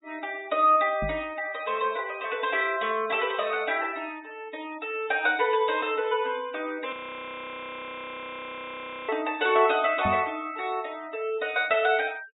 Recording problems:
treble missing; nothing above 4 kHz
noise reduction artefacts; signal-to-artefact ratio 23 dB
microphone bump; at 1 s and at 10 s; peak -2 dB vs average level
frozen audio; at 7 s for 2 s

